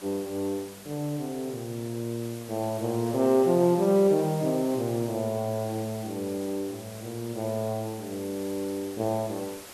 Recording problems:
hiss; slope -2 dB per octave, SNR 16 dB

